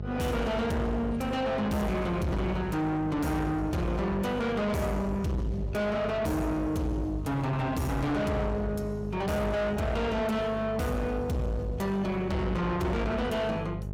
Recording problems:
distortion; soft clipping, signal-to-distortion ratio 6 dB
electrical hum; 50 Hz, harmonics up to 650 Hz, SNR 8 dB

